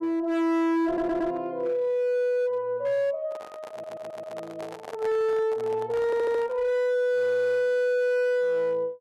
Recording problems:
distortion; hard clipping, signal-to-distortion ratio 11 dB
audio stuttering; at 1 s, at 3.5 s and at 6 s
handling noise; from 3.5 to 6.5 s; peak -10 dB vs average level

